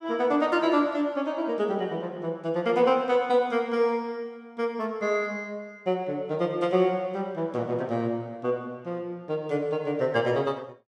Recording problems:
none

